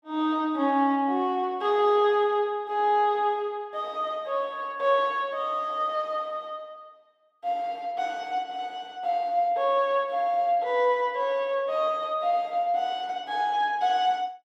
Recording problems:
none

